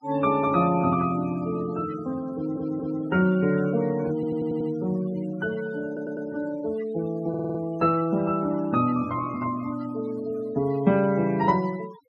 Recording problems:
denoising artefacts; signal-to-artefact ratio 20 dB
stutter; 4 times, first at 2.5 s

